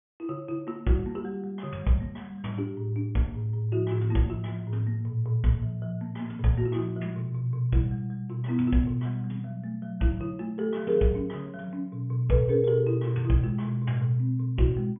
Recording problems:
low-pass filter; nothing above 3.4 kHz

